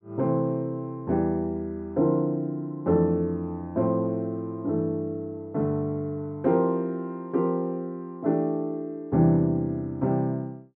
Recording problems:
none

